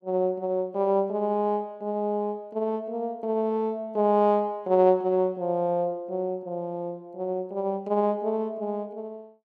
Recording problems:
none

